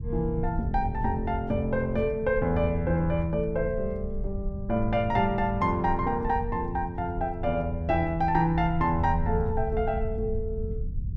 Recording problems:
rumble; below 96 Hz, SNR 8 dB

